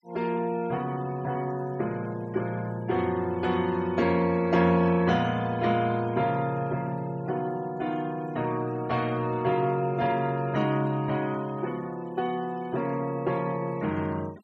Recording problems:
noise reduction artefacts; signal-to-artefact ratio 24 dB

